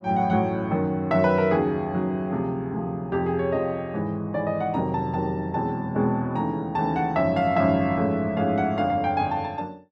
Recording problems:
none

